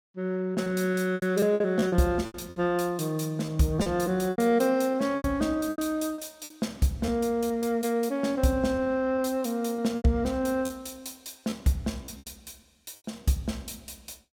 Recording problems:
packet loss; 10% of the sound replaced, filled with repeated pitch periods

